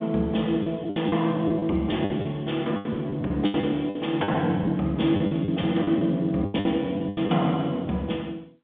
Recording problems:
phone line; 130 Hz to 3.6 kHz, G.711
packet loss; 13% of the sound replaced, filled with the last packet

